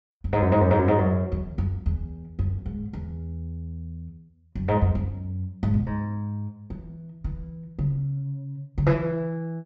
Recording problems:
low-pass filter; nothing above 8 kHz

